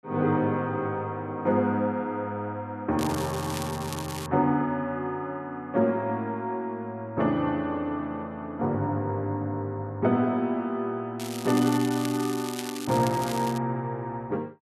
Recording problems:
crackle; from 3 to 4.5 s and from 11 to 14 s; loose cable, SNR 11 dB

